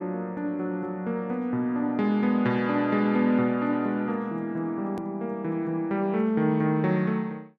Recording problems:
click at an edit; at 5 s

